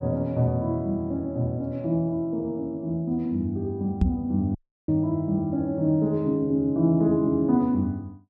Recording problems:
microphone thump; at 4 s; peak +8 dB vs average level
dropout; at 4.5 s

